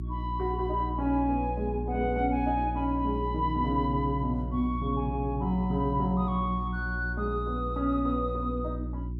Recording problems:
hum; 60 Hz, harmonics up to 360 Hz, SNR 5 dB

